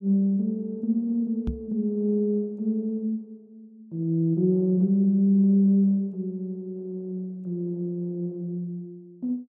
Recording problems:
knock on the microphone; at 1.5 s; peak -1 dB vs average level

